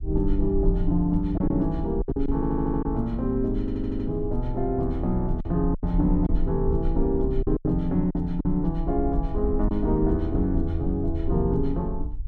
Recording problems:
low-frequency rumble; below 52 Hz, SNR 6 dB
lost packets; 5% of the sound replaced, filled with silence
stutter; at 2.5 s and at 3.5 s

